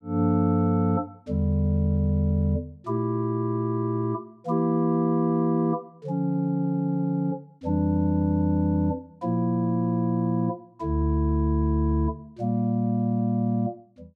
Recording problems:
none

